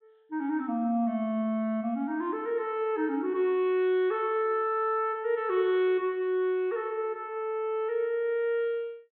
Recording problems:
treble missing; nothing above 3.9 kHz

